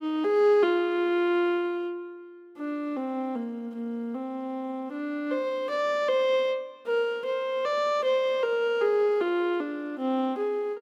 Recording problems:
none

